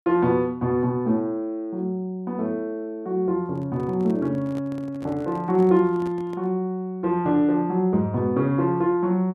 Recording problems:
microphone handling noise; from 3.5 to 6.5 s; peak -11 dB vs average level

